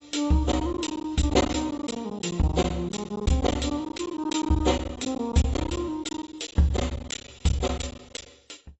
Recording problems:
lossy codec; AAC, log-spectral distance 5 dB, nothing above 7.8 kHz
lost packets; 14% of the sound replaced, filled with silence

